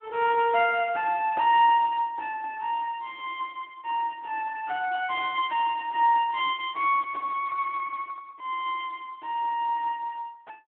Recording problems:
phone line; 280 Hz to 3.3 kHz, Speex

